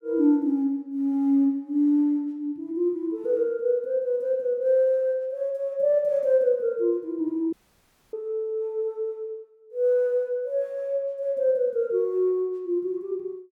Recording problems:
audio cutting out; at 7.5 s for 0.5 s

